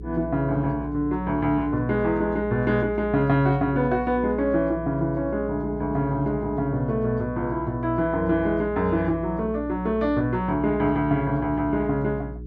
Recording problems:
hum; 60 Hz, harmonics up to 420 Hz, SNR 13 dB

